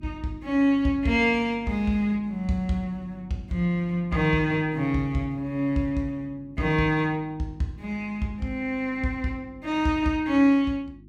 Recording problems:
mains hum; 50 Hz, harmonics up to 350 Hz, SNR 22 dB

